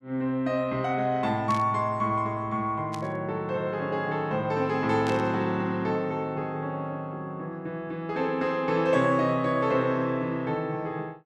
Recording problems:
static burst; at 1.5 s, at 3 s and at 5 s; peak -8 dB vs average level

